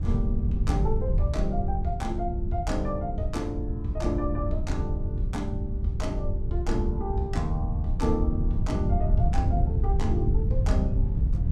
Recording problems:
wind noise; below 96 Hz, SNR -3 dB

